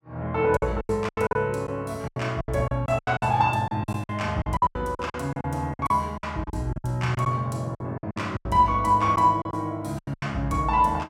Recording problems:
lost packets; 16% of the sound replaced, filled with silence

